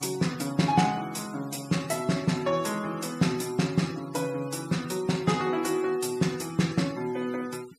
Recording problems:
noise reduction artefacts; signal-to-artefact ratio 18 dB

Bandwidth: 14.5 kHz